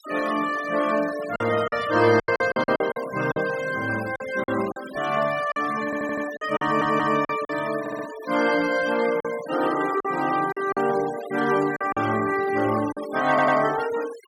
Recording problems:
denoising artefacts; signal-to-artefact ratio 15 dB
lost packets; 8% of the sound replaced, filled with silence
audio stuttering; 4 times, first at 6 s

